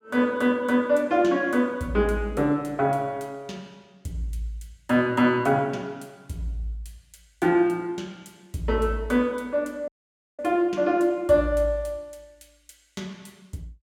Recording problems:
dropout; at 10 s for 0.5 s

